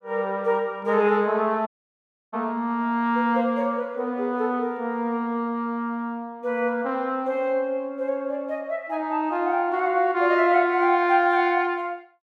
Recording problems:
audio cutting out; at 1.5 s for 0.5 s

